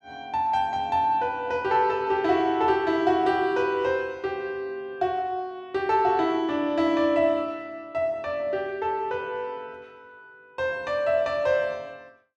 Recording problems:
none

